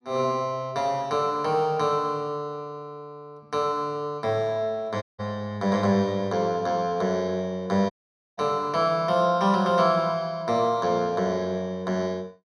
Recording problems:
dropout; at 5 s and at 8 s

